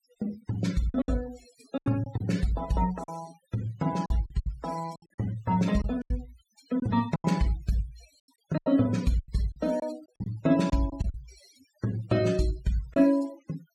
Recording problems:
noise reduction artefacts; signal-to-artefact ratio 18 dB
packet loss; 10% of the sound replaced, filled with silence

